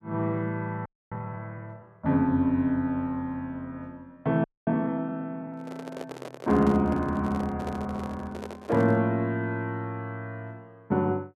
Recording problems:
frozen audio; at 1 s and at 4.5 s
handling noise; from 5.5 to 9 s; peak -5 dB vs average level

